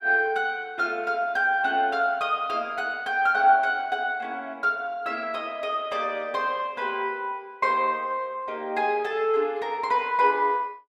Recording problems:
none

